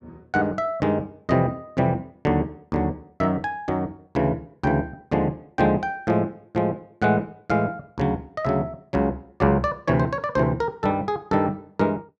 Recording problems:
none

